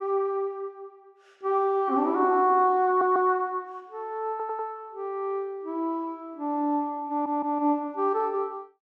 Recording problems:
stutter; at 3 s, at 4.5 s and at 7 s

